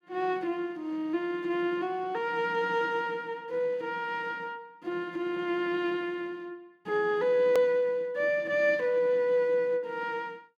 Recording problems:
edit click; at 7.5 s

